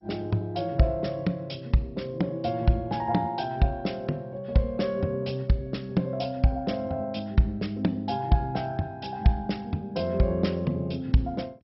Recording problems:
codec artefacts; MP2, log-spectral distance 2 dB, nothing above 5.5 kHz

